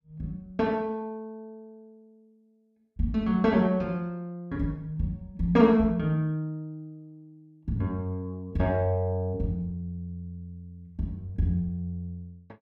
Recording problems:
none

